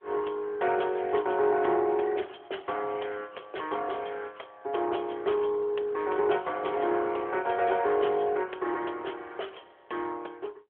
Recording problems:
telephone audio; 320 Hz to 3.4 kHz, AMR-NB

